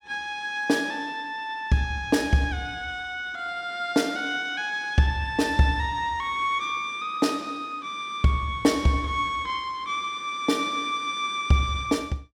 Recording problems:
none

